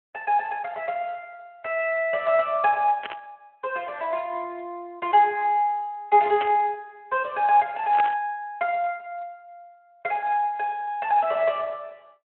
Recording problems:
phone line; 260 Hz to 3.3 kHz, Speex
burst of static; at 3 s, at 6.5 s and at 8 s; peak -2 dB vs average level

